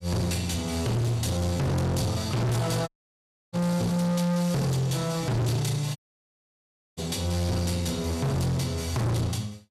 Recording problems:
distortion; hard clipping, signal-to-distortion ratio 6 dB
dropout; at 3 s for 0.5 s and at 6 s for 1 s

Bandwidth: 14.5 kHz